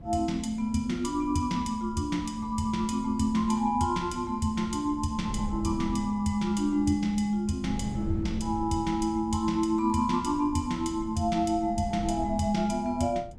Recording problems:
wind on the microphone; below 160 Hz, SNR 13 dB

